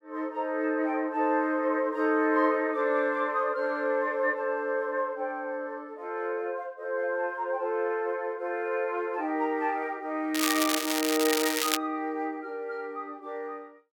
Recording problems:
crackle; from 10 to 12 s; loose cable, SNR 0 dB

